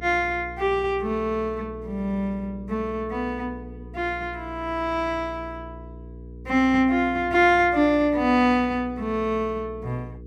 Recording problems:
electrical hum; 60 Hz, harmonics up to 480 Hz, SNR 17 dB

